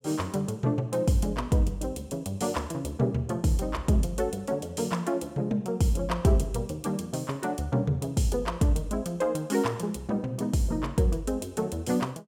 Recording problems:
none

